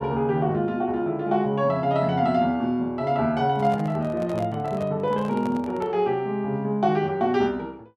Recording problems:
handling noise; from 3.5 to 6 s; peak -8 dB vs average level

